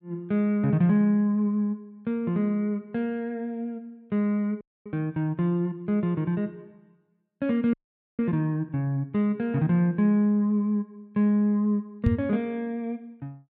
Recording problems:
frozen audio; at 4.5 s and at 7.5 s
microphone bump; at 12 s; peak +6 dB vs average level

